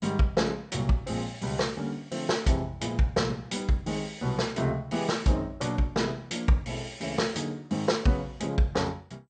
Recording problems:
lossy compression; MP2, log-spectral distance 3 dB, nothing above 8.5 kHz

